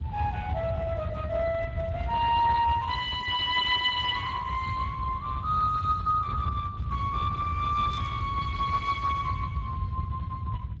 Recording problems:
lossy codec; Speex, log-spectral distance 3 dB
low-frequency rumble; below 120 Hz, SNR 6 dB
burst of static; at 8 s; peak -16 dB vs average level

